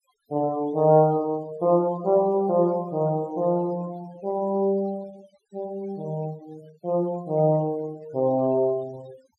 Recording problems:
denoising artefacts; signal-to-artefact ratio 24 dB

